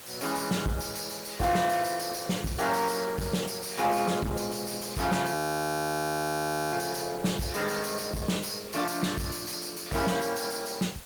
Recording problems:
codec artefacts; Opus, log-spectral distance 7 dB, nothing above 19 kHz
distortion; soft clipping, signal-to-distortion ratio 8 dB
hiss; slope -1 dB per octave, SNR 15 dB
frozen audio; at 5.5 s for 1.5 s

